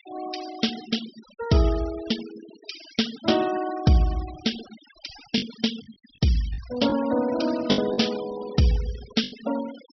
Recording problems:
treble missing; nothing above 5.8 kHz
denoising artefacts; signal-to-artefact ratio 15 dB
lost packets; 3% of the sound replaced, filled with the last packet

